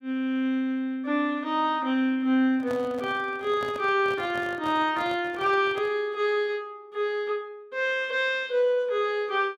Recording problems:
microphone handling noise; from 2.5 to 6 s; peak -8 dB vs average level

